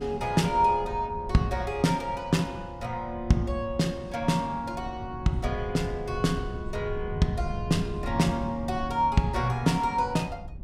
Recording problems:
wind on the microphone; below 120 Hz, SNR 12 dB

